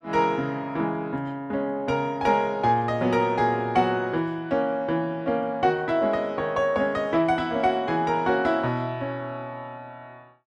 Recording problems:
none

